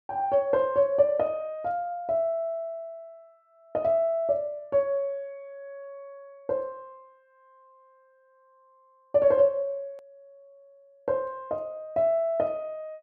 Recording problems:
hard cut with a click; at 10 s

